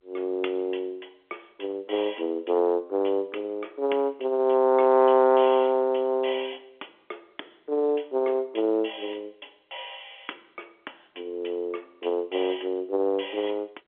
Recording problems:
telephone audio; 300 Hz to 3.5 kHz, G.711

